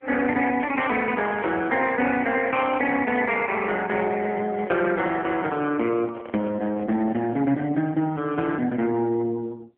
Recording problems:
telephone audio; 220 Hz to 3.2 kHz, AMR-NB
crackle; from 0.5 to 2 s; loose cable, SNR 20 dB
handling noise; from 3.5 to 7.5 s; peak -9 dB vs average level

